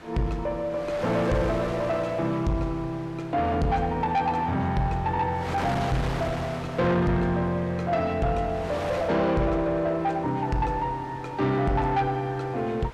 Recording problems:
distorted audio; soft clipping, signal-to-distortion ratio 11 dB
wind noise; below 2 kHz, SNR 13 dB

